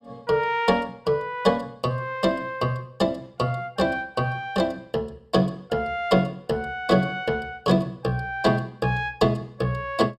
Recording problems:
none

